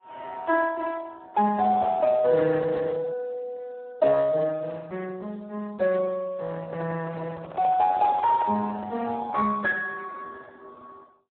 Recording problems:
telephone audio; 260 Hz to 2 kHz, Speex
microphone handling noise; from 6.5 to 9 s; peak -5 dB vs average level

